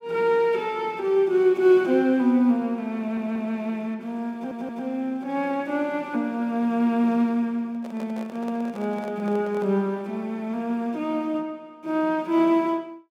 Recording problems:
audio stuttering; at 3 s and at 4.5 s
microphone handling noise; from 7.5 to 10 s; peak -11 dB vs average level

